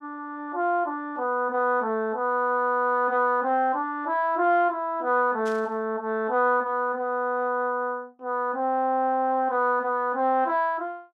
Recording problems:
burst of static; at 5.5 s; peak -14 dB vs average level

